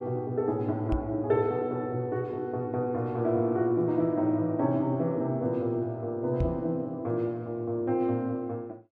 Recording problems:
microphone bump; at 1 s and at 6.5 s; peak +3 dB vs average level

